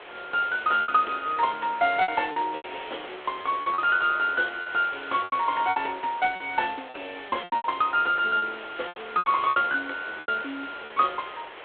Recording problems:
phone line; 320 Hz to 3.6 kHz, G.726
hiss; SNR 16 dB
packet loss; 11% of the sound replaced, filled with repeated pitch periods

